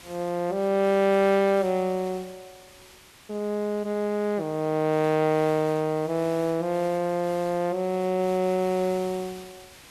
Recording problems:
background hiss; slope -1 dB per octave, SNR 21 dB

